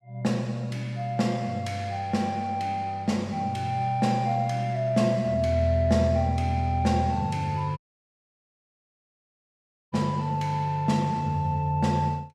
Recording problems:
dropout; at 8 s for 2 s

